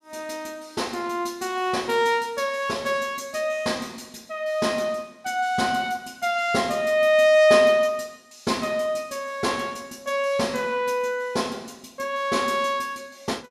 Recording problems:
none

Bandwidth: 14.5 kHz